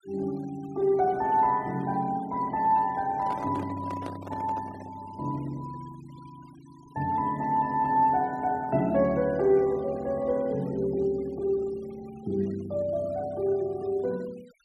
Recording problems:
denoising artefacts; signal-to-artefact ratio 25 dB
handling noise; from 3 to 5 s; peak -7 dB vs average level

